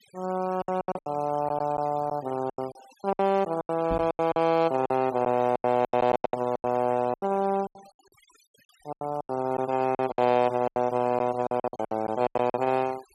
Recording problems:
denoising artefacts; signal-to-artefact ratio 21 dB
lost packets; 17% of the sound replaced, filled with silence
microphone thump; at 4 s; peak -3 dB vs average level

